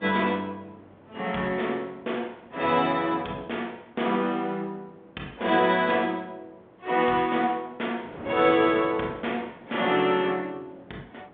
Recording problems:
phone line; 260 Hz to 3.6 kHz, G.726
wind noise; below 810 Hz, SNR 20 dB

